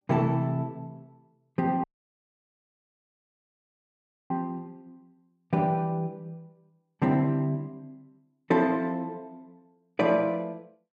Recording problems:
dropout; at 2 s for 2.5 s

